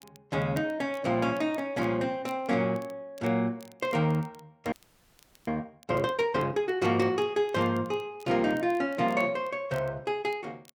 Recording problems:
crackle; vinyl, SNR 29 dB
frozen audio; at 4.5 s for 1 s

